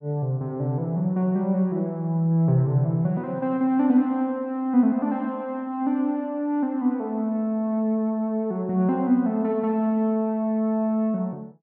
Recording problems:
none

